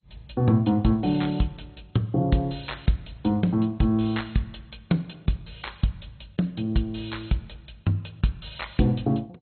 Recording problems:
lossy compression; MP2, log-spectral distance 4 dB, nothing above 4.2 kHz

